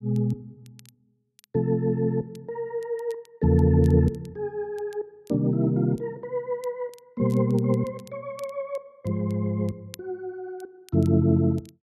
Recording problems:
crackle; vinyl, SNR 29 dB

